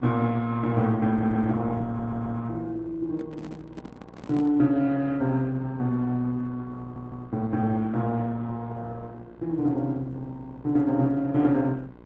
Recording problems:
codec artefacts; Opus, log-spectral distance 2 dB
electrical hum; 60 Hz, harmonics up to 2 kHz, SNR 23 dB
audio stuttering; at 1 s, at 2 s and at 7 s
handling noise; from 3 to 4.5 s; peak -8 dB vs average level

